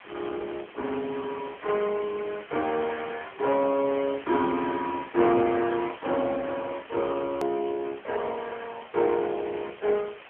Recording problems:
phone line; 260 Hz to 3.3 kHz, AMR-NB
hiss; SNR 18 dB
hard cut with a click; at 7.5 s

